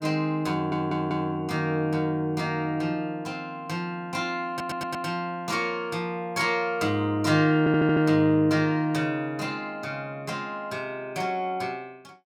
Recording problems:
stutter; at 0.5 s, at 4.5 s and at 7.5 s

